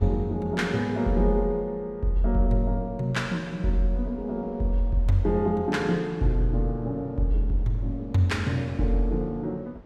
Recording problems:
wind on the microphone; below 540 Hz, SNR 25 dB

